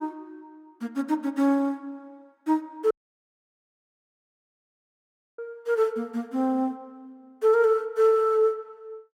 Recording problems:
dropout; at 3 s for 2.5 s

